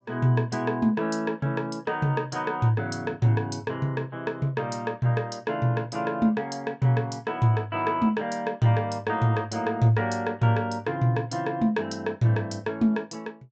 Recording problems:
low-pass filter; nothing above 8 kHz

